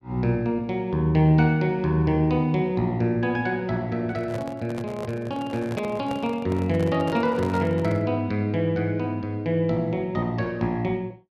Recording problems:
microphone handling noise; from 4 to 8 s; peak -5 dB vs average level

